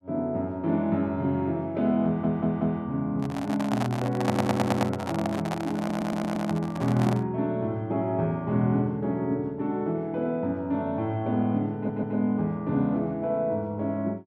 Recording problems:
audio stuttering; 4 times, first at 2 s
microphone handling noise; from 3 to 7.5 s; peak +4 dB vs average level

